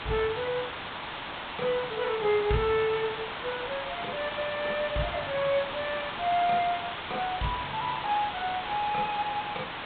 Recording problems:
low-pass filter; nothing above 4 kHz
background hiss; SNR 5 dB

